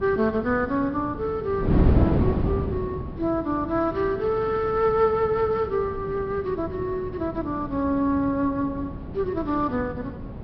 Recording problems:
low-pass filter; nothing above 5.5 kHz
wind noise; below 290 Hz, SNR 5 dB

